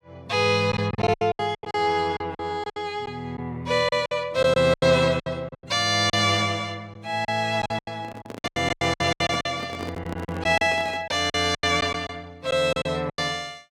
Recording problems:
lost packets; 15% of the sound replaced, filled with silence
microphone handling noise; from 8 to 11 s; peak -5 dB vs average level

